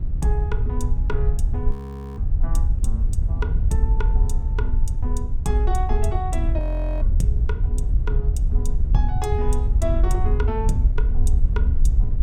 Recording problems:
wind noise; below 66 Hz, SNR -7 dB
frozen audio; at 1.5 s and at 6.5 s

